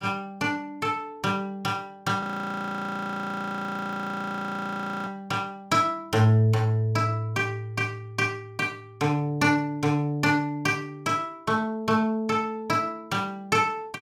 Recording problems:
frozen audio; at 2 s for 3 s

